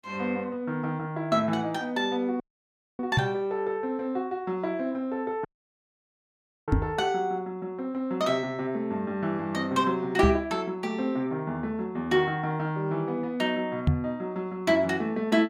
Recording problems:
audio cutting out; at 2.5 s for 0.5 s and at 5.5 s for 1 s
microphone bump; 4 times, first at 3 s; peak +9 dB vs average level

